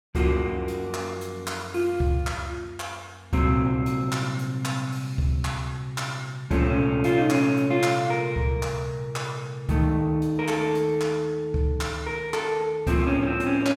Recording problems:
none

